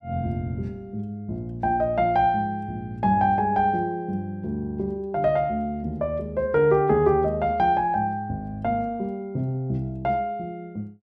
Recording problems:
none

